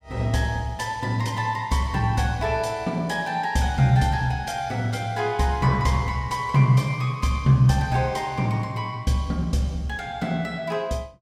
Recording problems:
none

